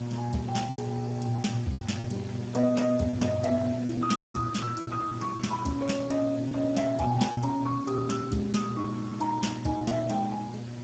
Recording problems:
codec artefacts; Speex, log-spectral distance 5 dB, nothing above 7.6 kHz
electrical hum; 60 Hz, harmonics up to 960 Hz, SNR 7 dB
hiss; slope -4 dB per octave, SNR 18 dB
lost packets; 7% of the sound replaced, filled with repeated pitch periods
dropout; at 4 s

